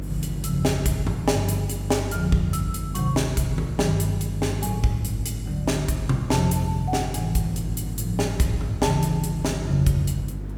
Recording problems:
electrical hum; 50 Hz, harmonics up to 350 Hz, SNR 9 dB
hiss; slope -8 dB per octave, SNR 21 dB

